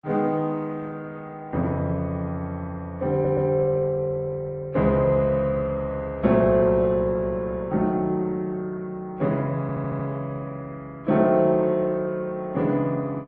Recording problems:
lossy compression; AAC, then Opus, log-spectral distance 2 dB
stutter; at 3 s and at 9.5 s

